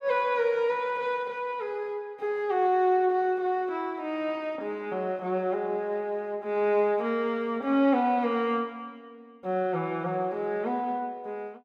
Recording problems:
none

